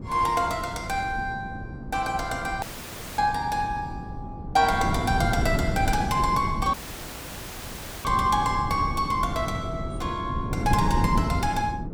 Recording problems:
wind noise; below 240 Hz, SNR 5 dB
audio cutting out; at 2.5 s for 0.5 s and at 6.5 s for 1.5 s

